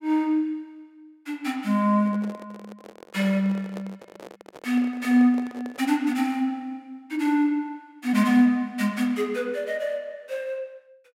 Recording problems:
microphone handling noise; from 2 to 6 s; peak -10 dB vs average level

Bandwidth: 16 kHz